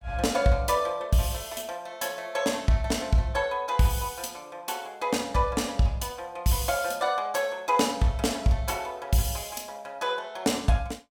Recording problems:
none

